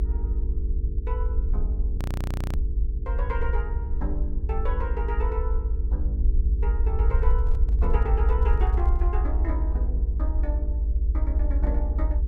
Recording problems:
electrical hum; 50 Hz, harmonics up to 450 Hz, SNR 7 dB
low-frequency rumble; below 66 Hz, SNR -10 dB
audio freezing; at 2 s for 0.5 s
handling noise; from 7 to 9 s; peak -10 dB vs average level

